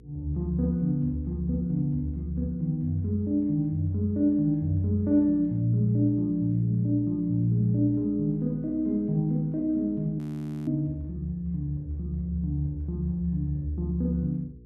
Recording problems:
mains hum; 60 Hz, harmonics up to 480 Hz, SNR 22 dB
frozen audio; at 10 s

